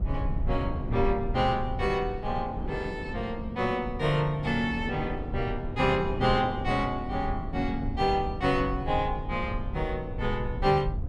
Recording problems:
low-frequency rumble; below 92 Hz, SNR 8 dB
wind on the microphone; below 440 Hz, SNR 12 dB

